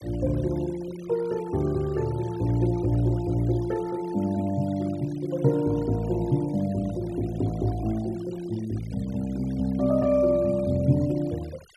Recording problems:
noise reduction artefacts; signal-to-artefact ratio 23 dB

